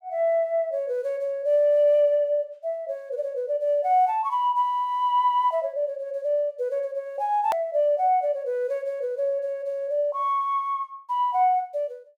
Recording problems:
click at an edit; at 7.5 s

